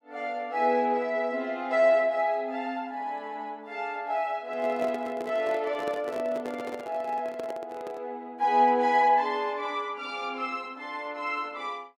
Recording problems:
microphone handling noise; from 4.5 to 8 s; peak -6 dB vs average level

